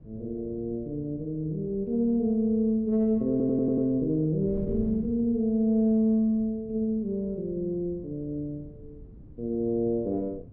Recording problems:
wind noise; below 200 Hz, SNR 18 dB
stutter; at 3.5 s

